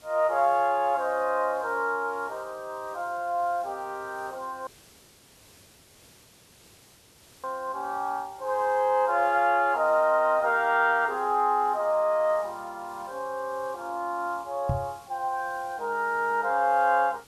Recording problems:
hiss; slope -2 dB per octave, SNR 26 dB
audio cutting out; at 4.5 s for 3 s
microphone thump; at 15 s; peak +1 dB vs average level

